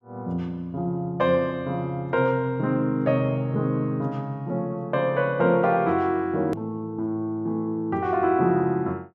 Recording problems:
hard cut with a click; at 6.5 s

